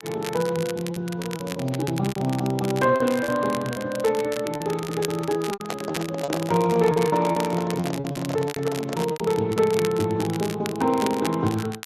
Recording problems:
lossy compression; Speex, log-spectral distance 2 dB
crackle; vinyl, SNR 13 dB
lost packets; 11% of the sound replaced, filled with repeated pitch periods
microphone handling noise; from 5.5 to 9 s; peak -3 dB vs average level

